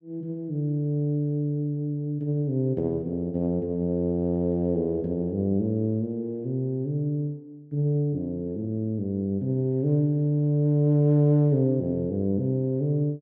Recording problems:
none

